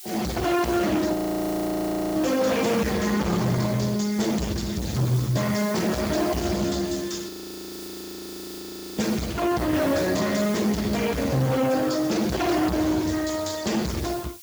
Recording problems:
codec artefacts; Speex, log-spectral distance 6 dB
distortion; soft clipping, signal-to-distortion ratio 6 dB
hiss; slope +5 dB per octave, SNR 16 dB
audio freezing; at 1 s for 1 s and at 7.5 s for 1.5 s

